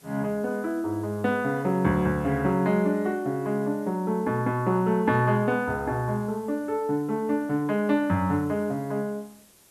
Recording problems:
background hiss; SNR 28 dB

